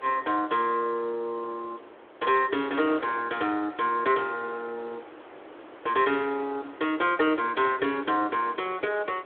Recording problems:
telephone audio; 280 Hz to 3.6 kHz, Speex
wind on the microphone; below 1.3 kHz, SNR 19 dB

